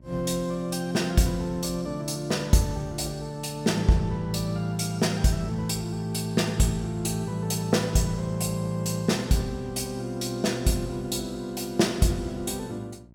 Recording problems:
hum; 60 Hz, harmonics up to 660 Hz, SNR 24 dB

